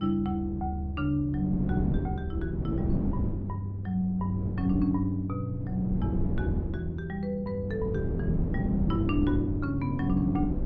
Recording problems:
wind noise; below 230 Hz, SNR 3 dB

